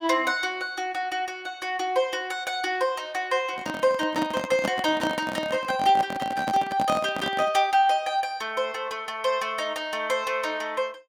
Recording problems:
microphone handling noise; from 3.5 to 7.5 s; peak +1 dB vs average level

